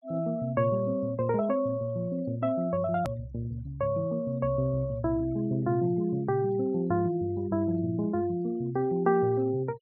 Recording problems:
treble missing; nothing above 6.2 kHz
noise reduction artefacts; signal-to-artefact ratio 26 dB
hard cut with a click; at 3 s

